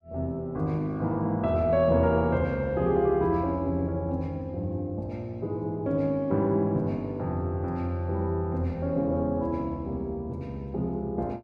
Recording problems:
none

